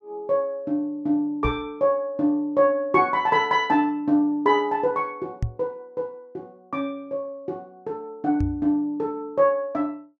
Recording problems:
microphone bump; at 1.5 s, at 5.5 s and at 8.5 s; peak +1 dB vs average level

